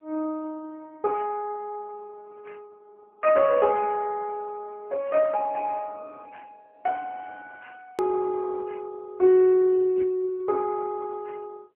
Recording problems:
phone line; 240 Hz to 3.2 kHz, AMR-NB
edit click; at 8 s

